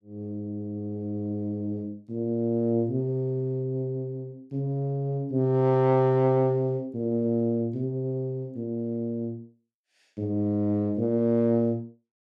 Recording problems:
none

